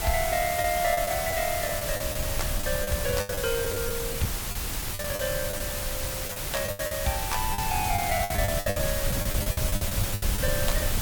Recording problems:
background hiss; slope -1 dB per octave, SNR 0 dB
wind noise; below 100 Hz, SNR 5 dB
packet loss; 13% of the sound replaced, filled with the last packet

